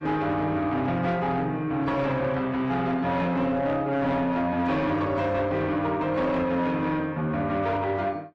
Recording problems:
codec artefacts; AAC, log-spectral distance 2 dB
distorted audio; soft clipping, signal-to-distortion ratio 11 dB

